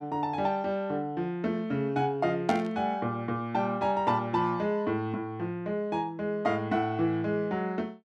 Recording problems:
static burst; at 2.5 s; peak -4 dB vs average level

